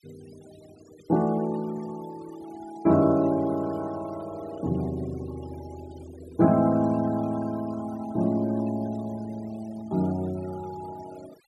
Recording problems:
denoising artefacts; signal-to-artefact ratio 21 dB

